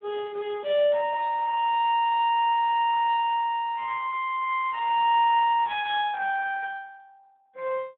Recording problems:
telephone audio; 280 Hz to 3.7 kHz, Speex

